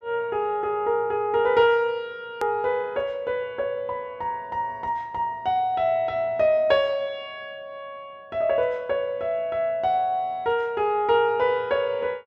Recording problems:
click at an edit; at 2.5 s

